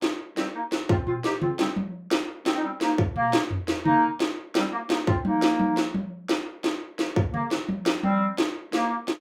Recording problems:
none

